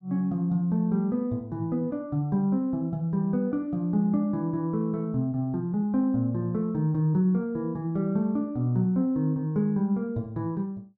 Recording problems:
none

